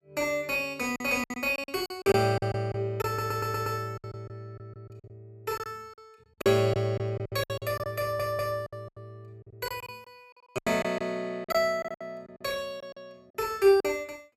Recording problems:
packet loss; 14% of the sound replaced, filled with silence
stutter; at 3 s and at 8 s

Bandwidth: 14.5 kHz